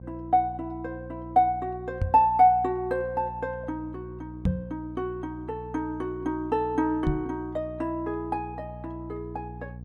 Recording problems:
hum; 60 Hz, harmonics up to 480 Hz, SNR 15 dB
microphone thump; at 2 s, at 4.5 s and at 7 s; peak +5 dB vs average level

